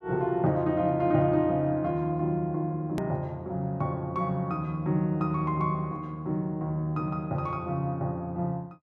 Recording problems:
click at an edit; at 3 s

